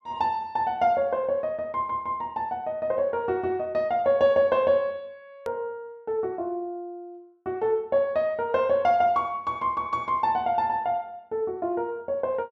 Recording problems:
hard cut with a click; at 5.5 s

